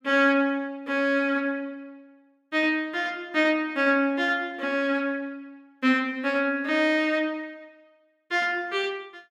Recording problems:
none

